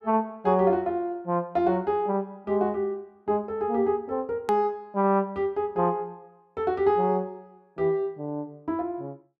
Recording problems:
hard cut with a click; at 4.5 s

